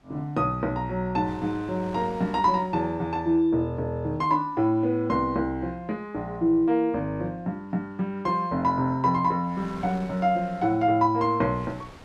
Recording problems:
wind noise; below 1.5 kHz, SNR 22 dB

